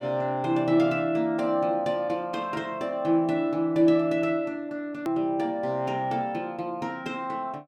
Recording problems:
hard cut with a click; at 5 s

